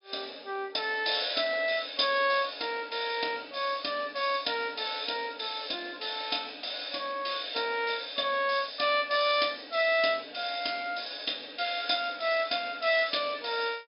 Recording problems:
treble missing; nothing above 5.5 kHz

